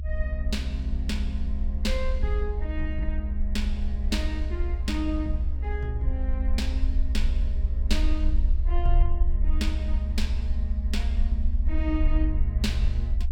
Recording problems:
low-frequency rumble; below 66 Hz, SNR -5 dB

